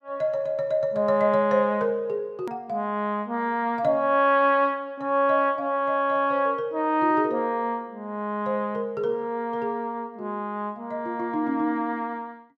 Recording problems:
hard cut with a click; at 2.5 s

